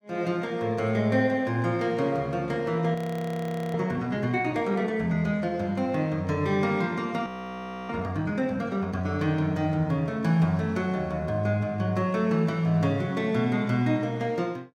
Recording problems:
audio freezing; at 3 s for 1 s and at 7.5 s for 0.5 s

